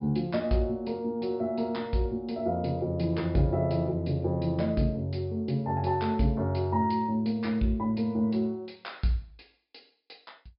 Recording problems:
low-pass filter; nothing above 5.5 kHz

